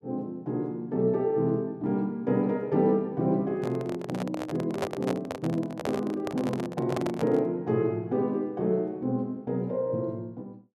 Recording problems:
handling noise; from 3.5 to 7.5 s; peak +2 dB vs average level

